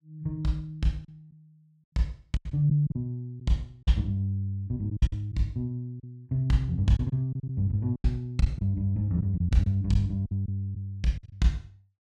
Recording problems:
packet loss; 8% of the sound replaced, filled with silence

